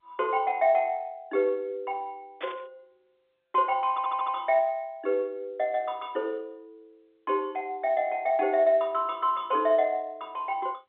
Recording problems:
phone line; 240 Hz to 3.6 kHz, G.711
burst of static; at 2.5 s; peak -7 dB vs average level
audio stuttering; at 4 s

